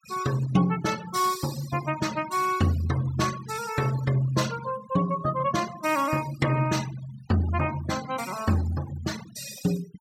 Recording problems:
noise reduction artefacts; signal-to-artefact ratio 15 dB

